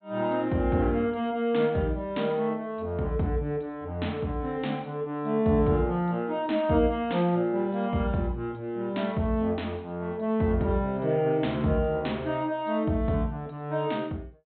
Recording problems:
treble missing; nothing above 4 kHz

